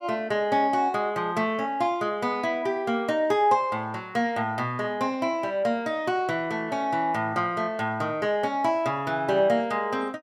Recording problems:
none

